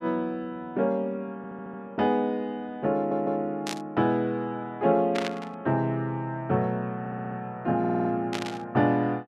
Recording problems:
stutter; 4 times, first at 1.5 s
static burst; at 3.5 s, at 5 s and at 8.5 s; peak -1 dB vs average level

